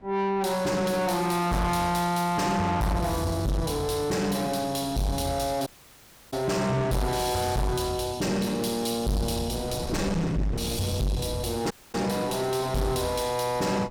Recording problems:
distortion; soft clipping, signal-to-distortion ratio 6 dB
wind on the microphone; below 400 Hz, SNR 16 dB
dropout; at 5.5 s for 0.5 s and at 12 s

